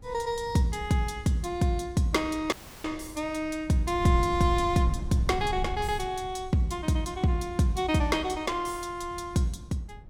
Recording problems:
wind noise; below 110 Hz, SNR 13 dB
dropout; at 2.5 s

